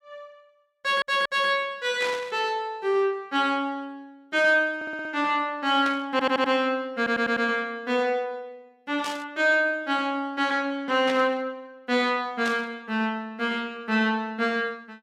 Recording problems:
stutter; 4 times, first at 1 s
static burst; 5 times, first at 2 s; peak -4 dB vs average level

